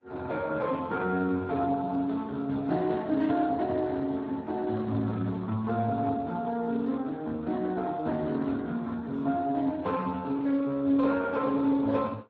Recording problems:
lossy codec; AAC, then Speex, log-spectral distance 3 dB

